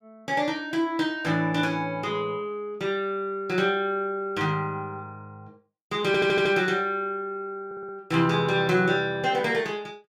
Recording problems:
audio stuttering; at 6 s and at 7.5 s

